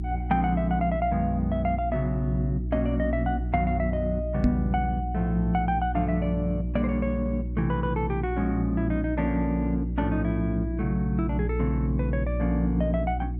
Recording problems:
electrical hum; 60 Hz, harmonics up to 360 Hz, SNR 4 dB
knock on the microphone; at 4.5 s; peak +6 dB vs average level

